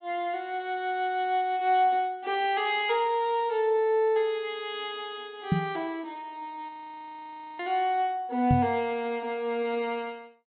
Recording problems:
treble cut off; nothing above 4 kHz
microphone bump; at 5.5 s and at 8.5 s; peak +7 dB vs average level
audio freezing; at 6.5 s for 1 s

